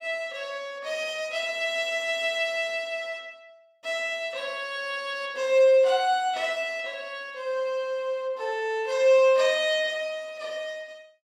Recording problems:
none

